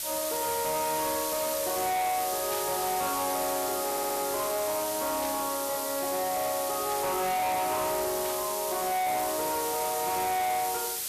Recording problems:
distorted audio; hard clipping, uneven, signal-to-distortion ratio 7 dB
hiss; SNR 3 dB
static burst; 4 times, first at 2.5 s; peak -9 dB vs average level
audio stuttering; at 4 s

